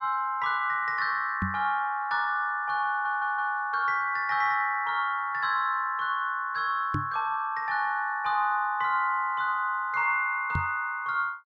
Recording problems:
microphone bump; at 1.5 s, at 7 s and at 11 s; peak 0 dB vs average level
stutter; at 3 s

